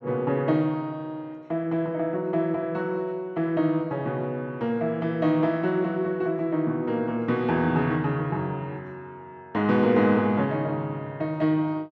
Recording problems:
none

